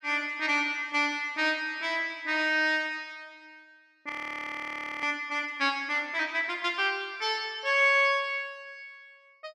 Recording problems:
frozen audio; at 4 s for 1 s

